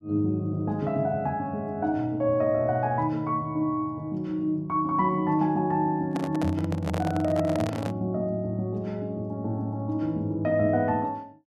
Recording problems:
handling noise; from 6 to 8 s; peak -2 dB vs average level

